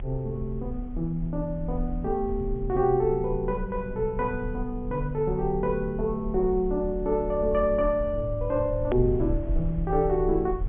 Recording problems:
low-pass filter; nothing above 3.4 kHz
rumble; below 56 Hz, strongest tone 32 Hz, SNR 9 dB
click at an edit; at 9 s

